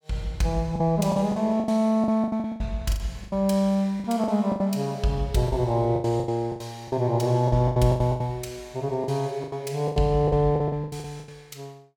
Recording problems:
packet loss; 16% of the sound replaced, filled with the last packet

